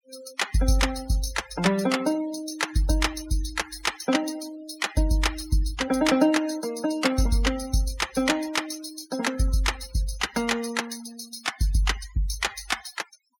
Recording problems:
noise reduction artefacts; signal-to-artefact ratio 15 dB

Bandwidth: 17 kHz